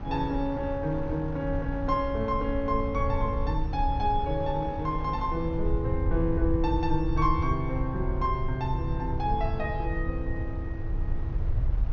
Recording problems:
treble cut off; nothing above 6.4 kHz
rumble; below 82 Hz, SNR 4 dB
wind on the microphone; below 630 Hz, SNR 15 dB

